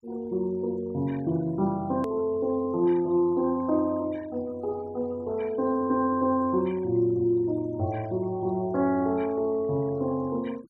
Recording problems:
denoising artefacts; signal-to-artefact ratio 26 dB
hard cut with a click; at 2 s

